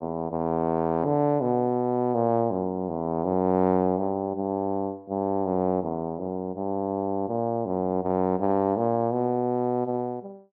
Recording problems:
none

